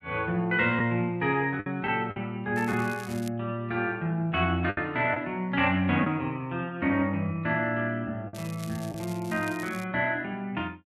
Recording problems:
lost packets; 3% of the sound replaced, filled with the last packet
crackling; at 2.5 s and from 8.5 to 10 s; loose cable, SNR 19 dB

